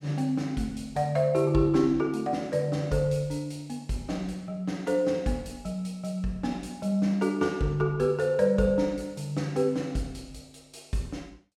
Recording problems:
none

